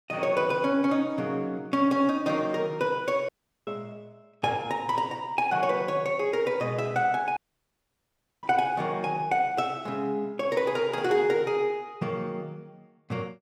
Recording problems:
audio cutting out; at 3.5 s and at 7.5 s for 1 s

